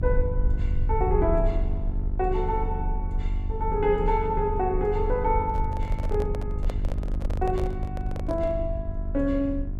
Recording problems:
hum; 50 Hz, harmonics up to 750 Hz, SNR 10 dB
rumble; below 76 Hz, strongest tone 34 Hz, SNR 3 dB
handling noise; from 5.5 to 8.5 s; peak -4 dB vs average level

